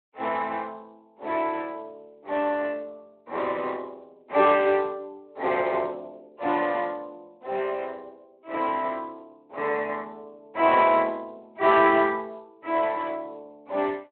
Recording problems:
phone line; 340 Hz to 3.6 kHz, Speex

